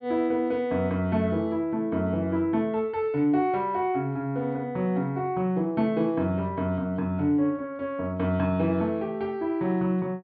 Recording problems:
treble missing; nothing above 5.5 kHz

